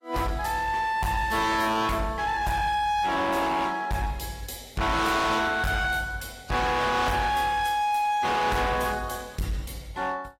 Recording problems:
lossy compression; AAC, log-spectral distance 3 dB, nothing above 15.5 kHz
distorted audio; hard clipping, signal-to-distortion ratio 7 dB

